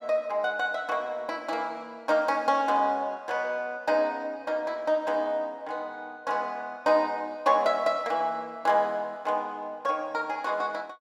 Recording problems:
none

